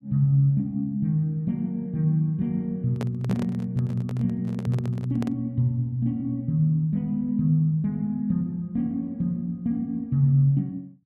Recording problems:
microphone handling noise; from 3 to 5.5 s; peak -4 dB vs average level

